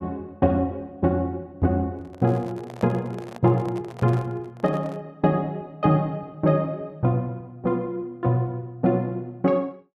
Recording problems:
handling noise; from 2 to 5 s; peak -8 dB vs average level

